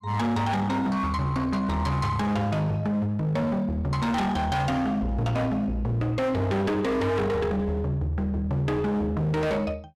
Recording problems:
distorted audio; hard clipping, signal-to-distortion ratio 7 dB

